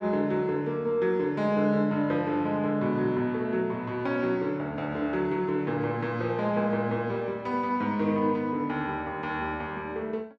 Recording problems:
none

